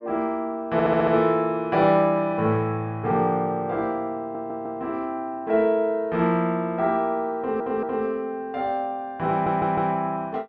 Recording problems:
audio stuttering; 4 times, first at 0.5 s

